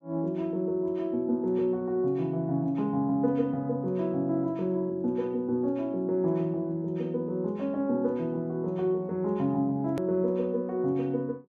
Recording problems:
hard cut with a click; at 10 s

